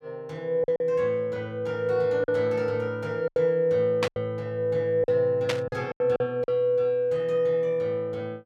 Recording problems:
packet loss; 6% of the sound replaced, filled with silence
static burst; at 4 s and at 5.5 s; peak +2 dB vs average level

